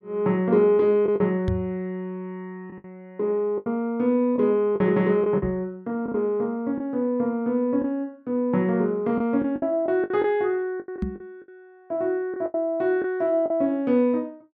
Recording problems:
packet loss; 7% of the sound replaced, filled with the last packet
knock on the microphone; at 1.5 s, at 5.5 s and at 11 s; peak +1 dB vs average level

